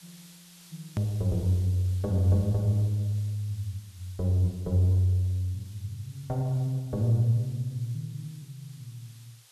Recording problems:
hiss; slope +2 dB per octave, SNR 25 dB
hard cut with a click; at 1 s

